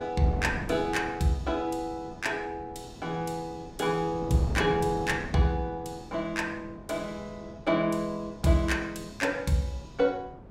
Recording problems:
wind noise; below 370 Hz, SNR 13 dB

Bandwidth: 16 kHz